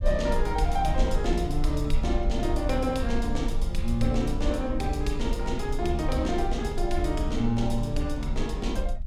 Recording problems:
low-frequency rumble; below 50 Hz, SNR 4 dB

